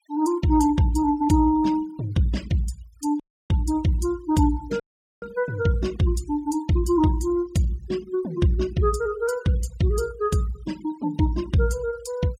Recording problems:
noise reduction artefacts; signal-to-artefact ratio 22 dB
audio cutting out; at 3 s and at 5 s

